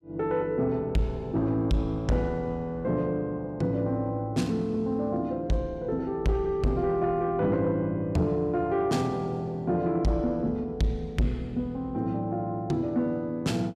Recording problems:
distortion; soft clipping, signal-to-distortion ratio 11 dB

